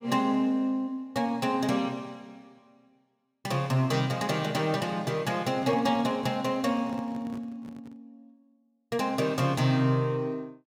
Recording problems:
microphone handling noise; from 5.5 to 8 s; peak -9 dB vs average level

